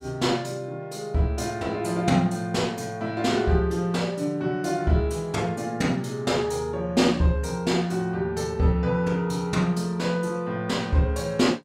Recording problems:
none

